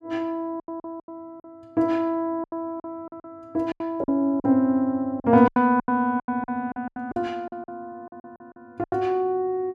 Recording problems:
lost packets; 15% of the sound replaced, filled with silence

